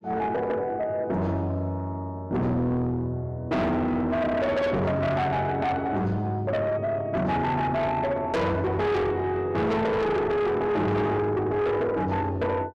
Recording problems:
distortion; soft clipping, signal-to-distortion ratio 7 dB

